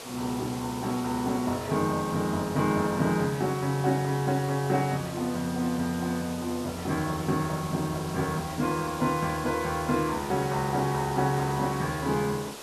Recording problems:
hiss; SNR 12 dB

